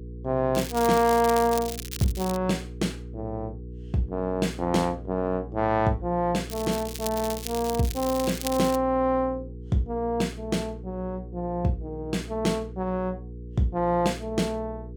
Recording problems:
hum; 60 Hz, harmonics up to 480 Hz, SNR 13 dB
crackling; from 0.5 to 2.5 s and from 6.5 to 9 s; loose cable, SNR 10 dB

